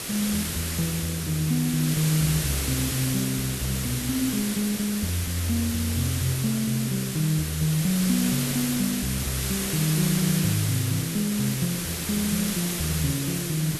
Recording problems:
background hiss; SNR 3 dB

